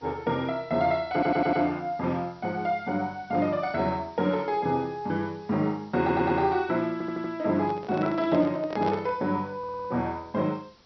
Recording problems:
treble missing; nothing above 5.9 kHz
hiss; SNR 29 dB
stutter; 4 times, first at 1 s
handling noise; from 7.5 to 9 s; peak -2 dB vs average level

